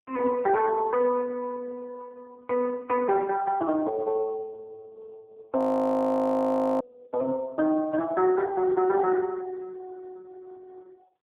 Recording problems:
phone line; 260 Hz to 2.5 kHz, AMR-NB
frozen audio; at 5.5 s for 1 s

